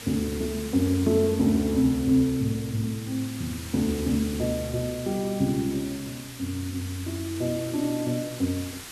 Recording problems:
background hiss; slope 0 dB per octave, SNR 13 dB

